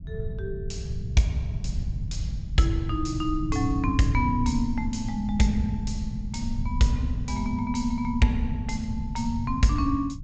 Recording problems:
treble cut off; nothing above 8 kHz
rumble; below 120 Hz, SNR 5 dB

